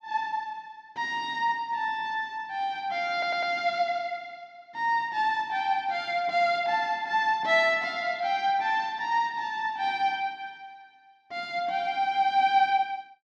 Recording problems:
audio stuttering; at 3 s

